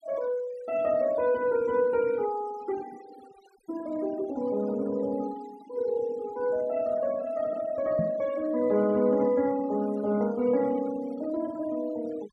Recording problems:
noise reduction artefacts; signal-to-artefact ratio 21 dB
microphone thump; at 8 s; peak +2 dB vs average level

